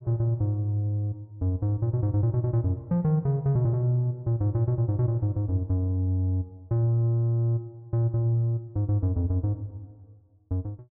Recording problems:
none

